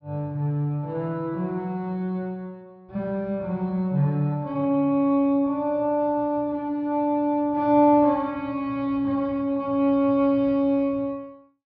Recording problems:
low-pass filter; nothing above 5.5 kHz

